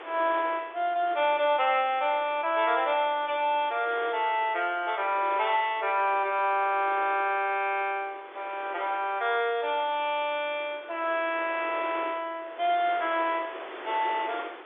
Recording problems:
telephone audio; 300 Hz to 3.6 kHz, G.711
wind on the microphone; below 2 kHz, SNR 16 dB

